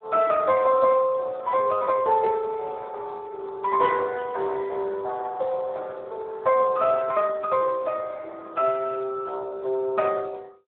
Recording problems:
phone line; 340 Hz to 3.8 kHz, Speex

